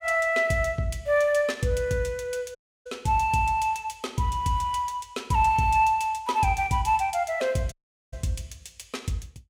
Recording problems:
dropout; at 2.5 s and at 7.5 s

